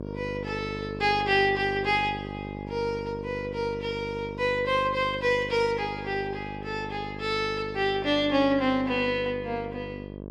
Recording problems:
mains hum; 50 Hz, harmonics up to 1.1 kHz, SNR 10 dB

